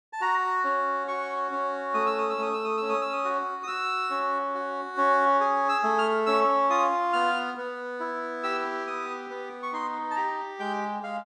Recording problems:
none

